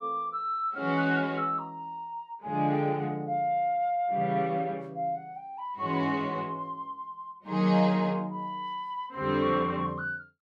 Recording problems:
none

